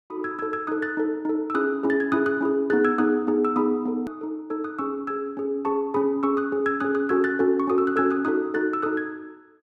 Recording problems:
edit click; at 4 s

